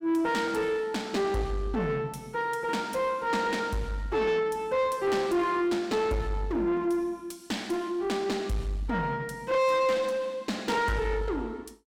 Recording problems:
distorted audio; soft clipping, signal-to-distortion ratio 7 dB

